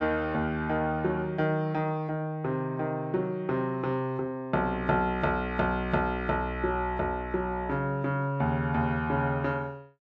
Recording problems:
none

